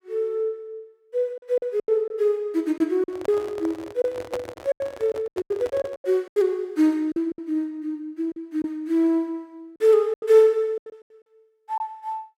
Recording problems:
lost packets; 10% of the sound replaced, filled with silence
microphone handling noise; from 3 to 6 s; peak -2 dB vs average level

